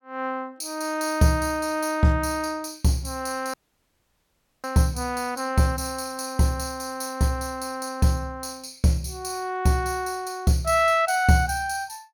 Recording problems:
audio cutting out; at 3.5 s for 1 s

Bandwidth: 17.5 kHz